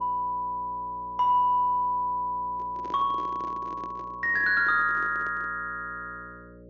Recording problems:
treble missing; nothing above 6.8 kHz
hum; 60 Hz, harmonics up to 600 Hz, SNR 22 dB
microphone handling noise; from 2.5 to 5.5 s; peak -12 dB vs average level

